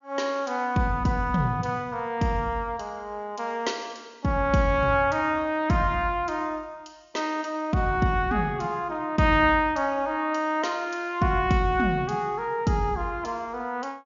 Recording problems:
treble missing; nothing above 7 kHz

